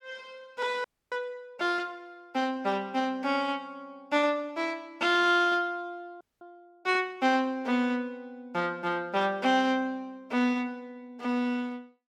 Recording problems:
audio freezing; at 1 s and at 6 s

